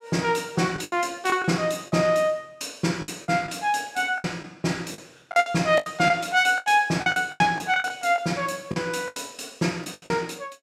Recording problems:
packet loss; 12% of the sound replaced, filled with the last packet

